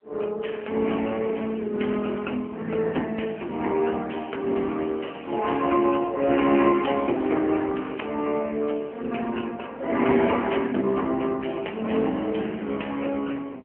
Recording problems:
phone line; 220 Hz to 3.2 kHz, AMR-NB

